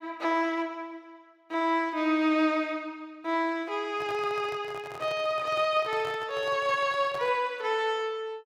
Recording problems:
handling noise; from 4 to 7.5 s; peak -10 dB vs average level

